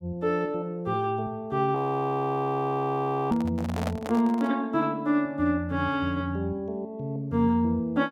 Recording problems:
audio freezing; at 2 s for 1.5 s
handling noise; from 3.5 to 4.5 s; peak -1 dB vs average level

